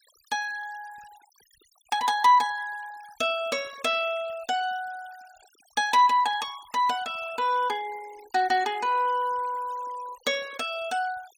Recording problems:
noise reduction artefacts; signal-to-artefact ratio 22 dB

